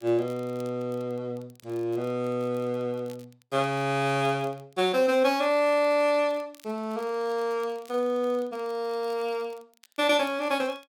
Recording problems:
crackle; vinyl, SNR 29 dB

